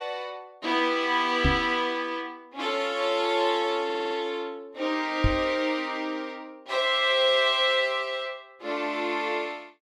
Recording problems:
knock on the microphone; at 1.5 s and at 5 s; peak +4 dB vs average level
stutter; at 4 s

